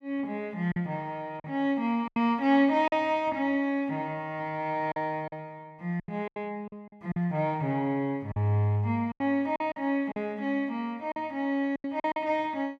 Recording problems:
lost packets; 8% of the sound replaced, filled with silence

